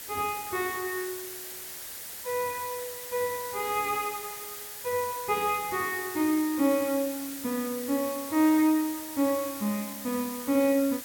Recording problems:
background hiss; slope 0 dB per octave, SNR 9 dB

